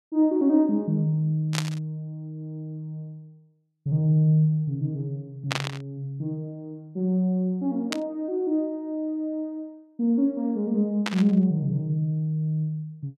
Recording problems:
burst of static; 4 times, first at 1.5 s; peak +3 dB vs average level

